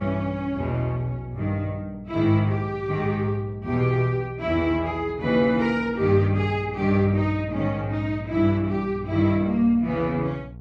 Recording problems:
hum; 60 Hz, harmonics up to 720 Hz, SNR 18 dB

